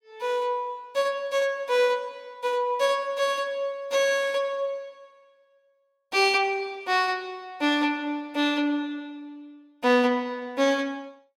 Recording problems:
none

